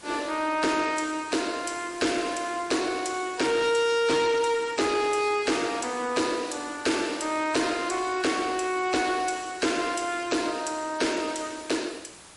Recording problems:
codec artefacts; MP3, log-spectral distance 7 dB, nothing above 11 kHz
distorted audio; soft clipping, signal-to-distortion ratio 11 dB
background hiss; slope -2 dB per octave, SNR 20 dB

